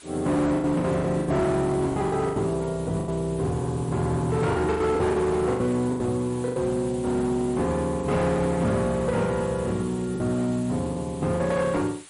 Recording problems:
lossy codec; MP3, log-spectral distance 9 dB
distorted audio; hard clipping, uneven, signal-to-distortion ratio 11 dB
hiss; SNR 20 dB
lost packets; 9% of the sound replaced, filled with the last packet

